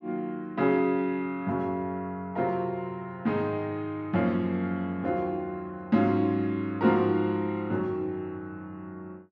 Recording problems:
none

